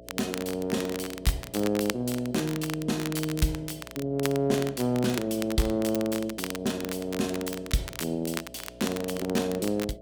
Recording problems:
hum; 60 Hz, harmonics up to 660 Hz, SNR 19 dB
crackle; vinyl, SNR 10 dB

